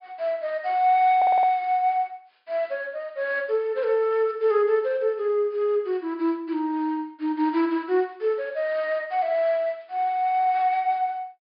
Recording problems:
treble cut off; nothing above 5.1 kHz
audio stuttering; at 1 s

